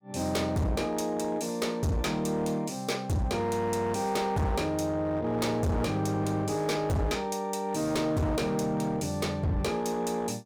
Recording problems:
distorted audio; hard clipping, signal-to-distortion ratio 7 dB

